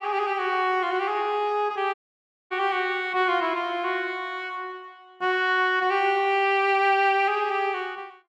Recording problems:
audio cutting out; at 2 s for 0.5 s

